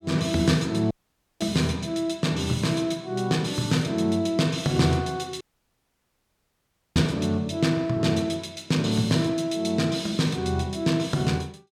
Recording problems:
dropout; at 1 s and at 5.5 s for 1.5 s

